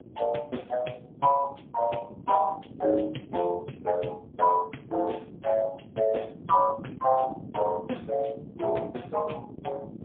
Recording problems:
phone line; 190 Hz to 3.4 kHz, AMR-NB, then MP3
wind on the microphone; below 330 Hz, SNR 16 dB

